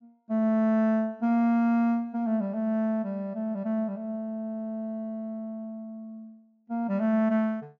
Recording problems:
treble missing; nothing above 7.2 kHz

